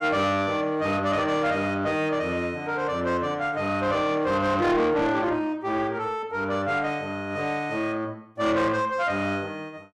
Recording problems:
distorted audio; soft clipping, signal-to-distortion ratio 10 dB

